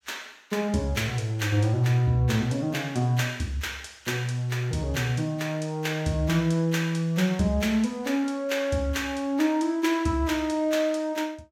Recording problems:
none

